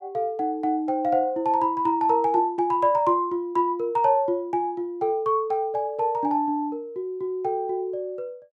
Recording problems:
none

